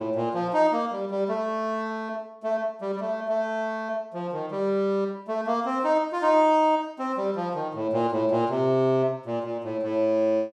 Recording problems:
none

